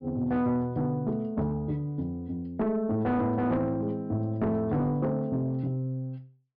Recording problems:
treble missing; nothing above 5.5 kHz
distortion; soft clipping, signal-to-distortion ratio 11 dB

